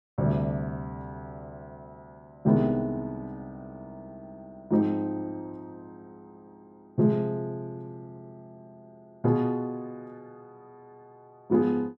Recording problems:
none

